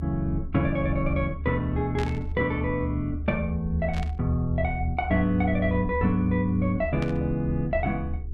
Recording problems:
hum; 60 Hz, harmonics up to 420 Hz, SNR 25 dB
low-frequency rumble; below 76 Hz, strongest tone 74 Hz, SNR 7 dB
static burst; at 2 s, at 4 s and at 7 s; peak -7 dB vs average level

